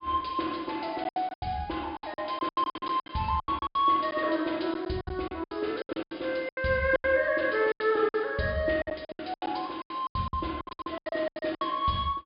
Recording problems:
treble cut off; nothing above 5 kHz
packet loss; 19% of the sound replaced, filled with silence

